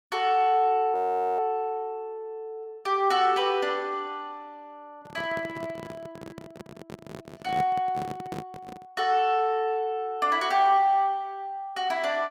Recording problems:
frozen audio; at 1 s
microphone handling noise; from 5 to 9 s; peak -4 dB vs average level

